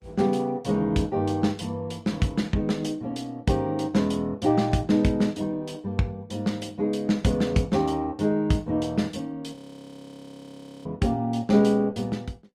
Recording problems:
lossy compression; Opus, log-spectral distance 2 dB, nothing above 18.9 kHz
frozen audio; at 9.5 s for 1.5 s

